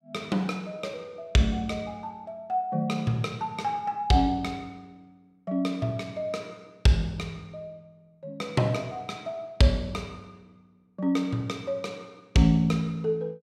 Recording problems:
none

